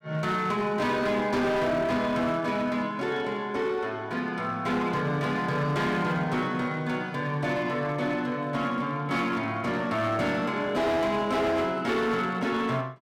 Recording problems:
distorted audio; hard clipping, signal-to-distortion ratio 10 dB

